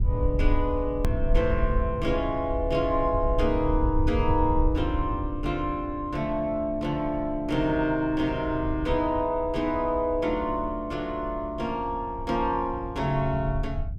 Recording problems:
low-frequency rumble; below 78 Hz, SNR 6 dB
click at an edit; at 1 s

